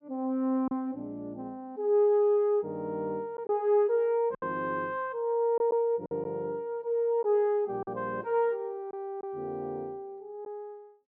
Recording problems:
lost packets; 3% of the sound replaced, filled with silence

